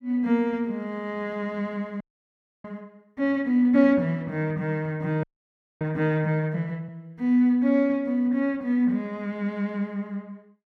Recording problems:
audio freezing; at 2 s for 0.5 s and at 5 s for 0.5 s

